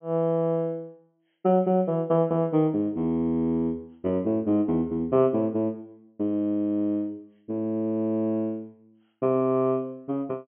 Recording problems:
treble cut off; nothing above 3.3 kHz

